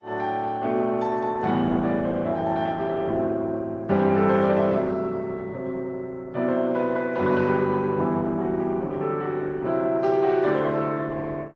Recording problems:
codec artefacts; Opus, then AAC, log-spectral distance 2 dB

